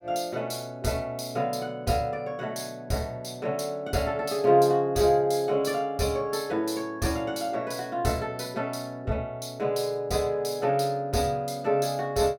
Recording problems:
none

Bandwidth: 17.5 kHz